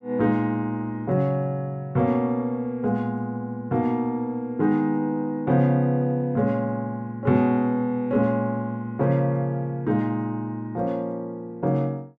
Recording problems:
none

